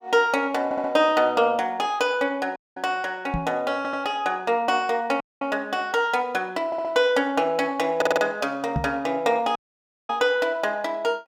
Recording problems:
stutter; 4 times, first at 0.5 s
audio cutting out; at 2.5 s, at 5 s and at 9.5 s for 0.5 s
knock on the microphone; at 3.5 s and at 9 s; peak +2 dB vs average level

